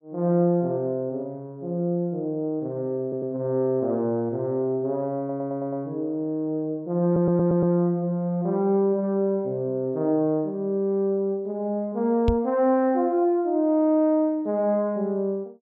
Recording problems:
stutter; at 3 s, at 5 s and at 7 s
microphone thump; at 12 s; peak +4 dB vs average level

